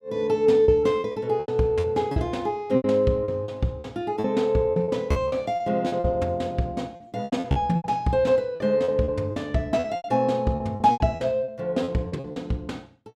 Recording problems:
lost packets; 14% of the sound replaced, filled with repeated pitch periods

